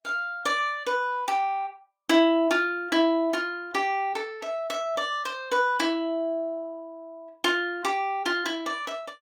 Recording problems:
lossy compression; Opus, log-spectral distance 2 dB, nothing above 19 kHz

